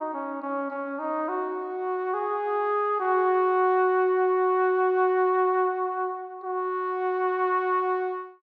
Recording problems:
none

